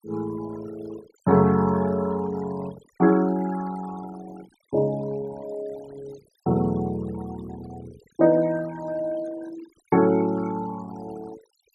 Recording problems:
noise reduction artefacts; signal-to-artefact ratio 20 dB

